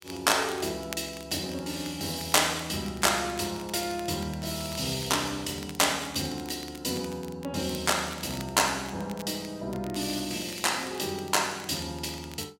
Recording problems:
crackling; vinyl, SNR 18 dB

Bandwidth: 16 kHz